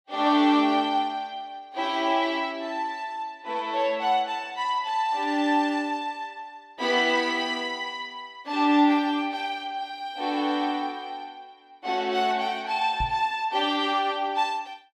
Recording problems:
microphone bump; at 13 s; peak -4 dB vs average level

